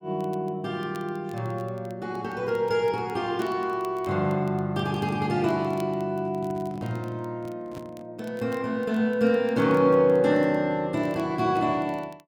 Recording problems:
crackle; vinyl, SNR 30 dB
microphone handling noise; from 6 to 8 s; peak -9 dB vs average level

